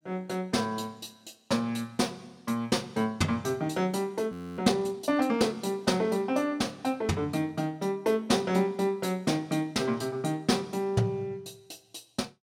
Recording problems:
audio freezing; at 4.5 s

